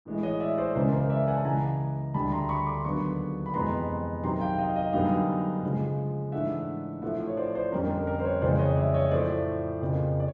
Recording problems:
none

